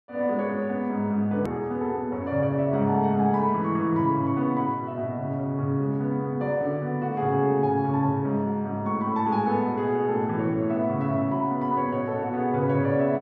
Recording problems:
edit click; at 1.5 s

